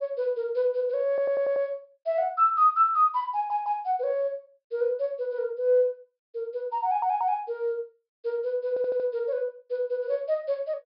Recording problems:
treble cut off; nothing above 5.5 kHz
audio stuttering; 4 times, first at 1 s

